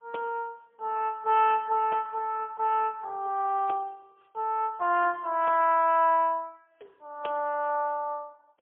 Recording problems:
telephone audio; 340 Hz to 3.1 kHz, AMR-NB, then MP3

